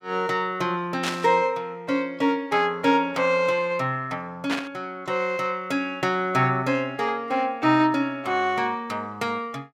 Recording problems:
burst of static; at 1 s and at 4.5 s; peak 0 dB vs average level

